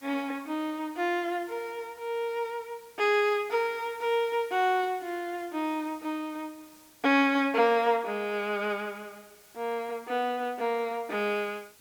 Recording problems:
hiss; slope -1 dB per octave, SNR 25 dB

